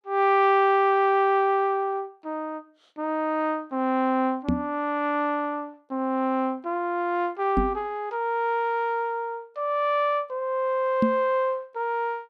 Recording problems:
microphone thump; at 4.5 s, at 7.5 s and at 11 s; peak +6 dB vs average level

